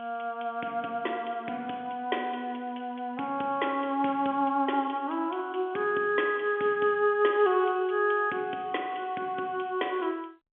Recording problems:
telephone audio; 220 Hz to 3.4 kHz, G.711

